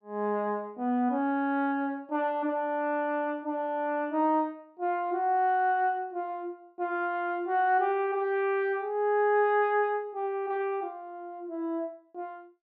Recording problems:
none

